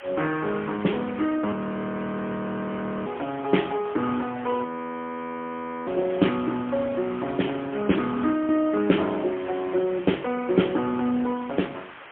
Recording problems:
phone line; 170 Hz to 3.4 kHz, AMR-NB, then MP3
hiss; SNR 16 dB
audio freezing; at 1.5 s for 1.5 s and at 4.5 s for 1 s

